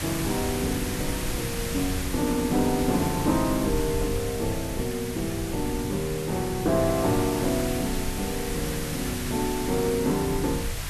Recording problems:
hiss; slope -1 dB per octave, SNR 7 dB
rumble; below 100 Hz, SNR 10 dB

